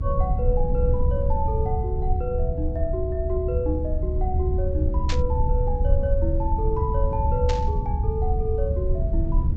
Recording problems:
treble cut off; nothing above 8 kHz
rumble; below 78 Hz, SNR -3 dB
burst of static; at 5 s and at 7.5 s; peak +2 dB vs average level

